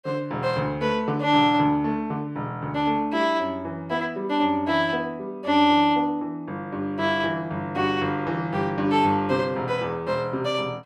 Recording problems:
none

